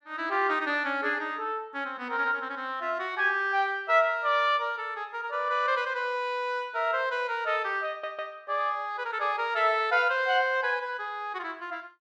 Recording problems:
stutter; at 8 s

